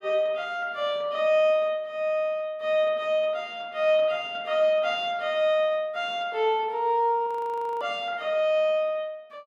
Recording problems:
audio freezing; at 7.5 s for 0.5 s

